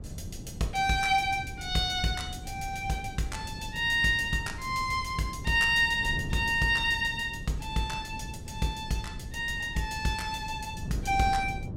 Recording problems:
wind noise; below 180 Hz, SNR 12 dB

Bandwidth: 16 kHz